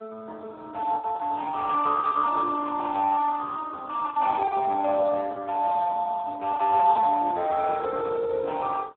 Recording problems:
telephone audio; 320 Hz to 2.8 kHz, Speex
packet loss; 5% of the sound replaced, filled with the last packet

